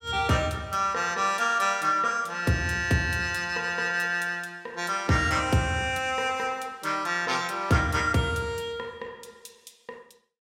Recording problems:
none

